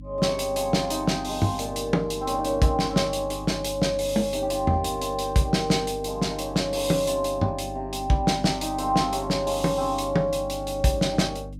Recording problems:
hum; 50 Hz, harmonics up to 300 Hz, SNR 15 dB

